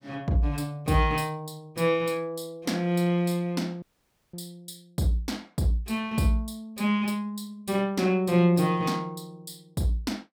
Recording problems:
audio cutting out; at 4 s for 0.5 s

